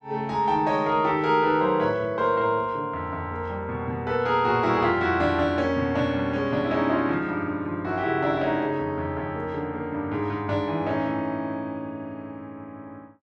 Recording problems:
none

